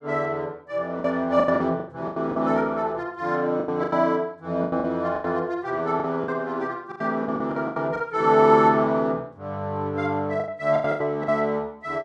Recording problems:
lost packets; 12% of the sound replaced, filled with the last packet

